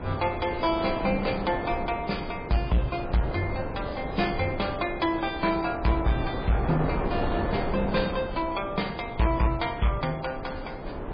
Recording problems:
lossy codec; MP3, log-spectral distance 4 dB, nothing above 4.8 kHz
distorted audio; hard clipping, signal-to-distortion ratio 12 dB
wind on the microphone; below 680 Hz, SNR 6 dB

